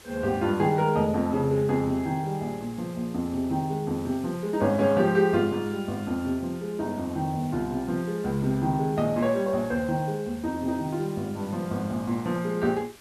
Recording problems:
background hiss; slope -1 dB per octave, SNR 22 dB

